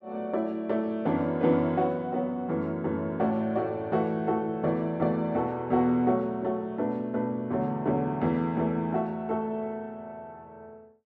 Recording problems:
none

